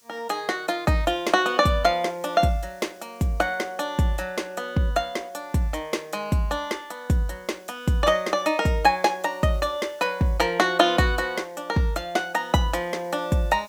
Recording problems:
hiss; SNR 30 dB

